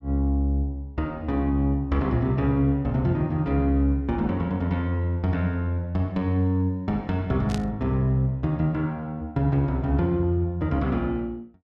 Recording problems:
burst of static; at 7.5 s; peak -7 dB vs average level

